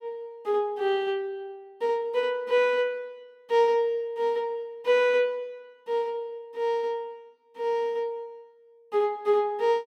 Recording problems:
none

